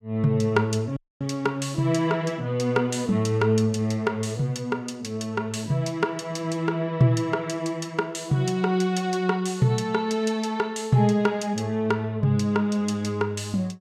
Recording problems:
audio cutting out; at 1 s

